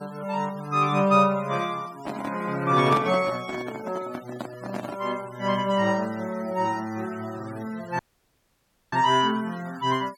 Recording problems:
noise reduction artefacts; signal-to-artefact ratio 20 dB
microphone handling noise; from 2 to 5 s; peak 0 dB vs average level
audio cutting out; at 8 s for 1 s

